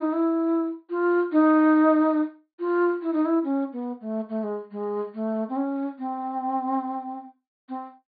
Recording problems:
treble cut off; nothing above 4.7 kHz

